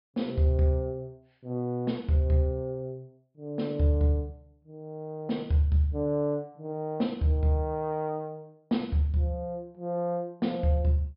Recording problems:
treble cut off; nothing above 5.5 kHz

